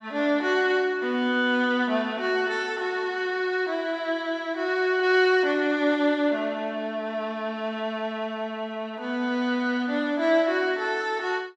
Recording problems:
none

